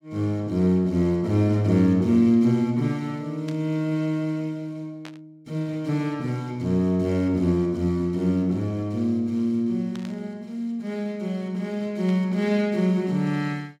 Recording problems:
burst of static; 4 times, first at 3.5 s; peak -13 dB vs average level

